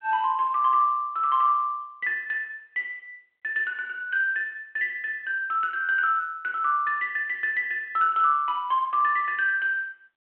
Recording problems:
phone line; 280 Hz to 3.2 kHz, G.726

